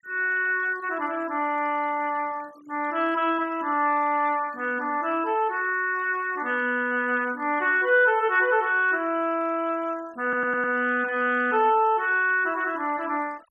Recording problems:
noise reduction artefacts; signal-to-artefact ratio 25 dB
stutter; at 10 s

